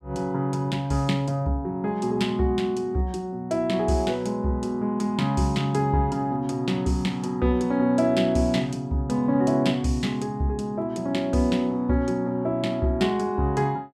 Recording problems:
none

